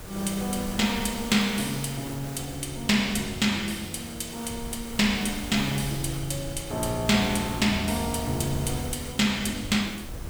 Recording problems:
hiss; slope -4 dB per octave, SNR 13 dB
wind on the microphone; below 120 Hz, SNR 16 dB

